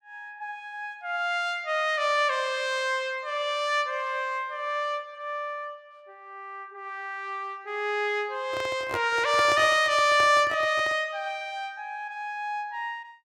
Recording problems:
handling noise; from 8.5 to 11 s; peak -3 dB vs average level

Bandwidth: 16.5 kHz